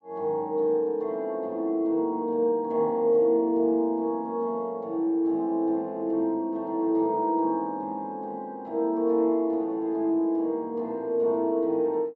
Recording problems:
treble missing; nothing above 8 kHz

